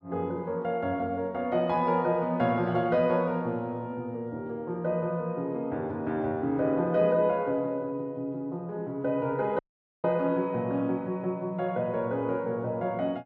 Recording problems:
audio cutting out; at 9.5 s

